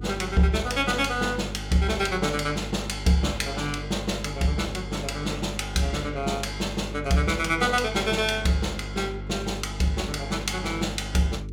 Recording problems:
hum; 50 Hz, harmonics up to 450 Hz, SNR 10 dB

